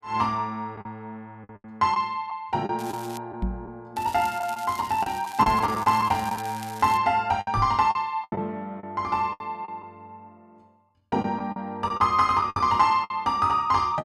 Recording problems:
packet loss; 9% of the sound replaced, filled with the last packet
crackle; at 3 s and from 4 to 7 s; loose cable, SNR 18 dB
knock on the microphone; at 3.5 s, at 5.5 s and at 7.5 s; peak 0 dB vs average level

